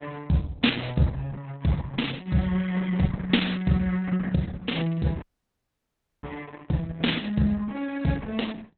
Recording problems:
codec artefacts; Opus, log-spectral distance 5 dB, nothing above 4 kHz
dropout; at 5 s for 1 s

